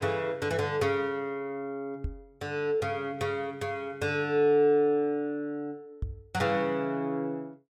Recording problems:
microphone bump; at 2 s and at 6 s; peak -1 dB vs average level

